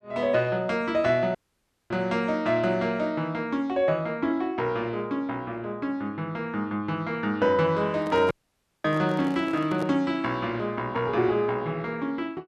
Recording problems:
dropout; at 1.5 s for 0.5 s and at 8.5 s for 0.5 s
handling noise; from 8 to 10 s; peak -5 dB vs average level

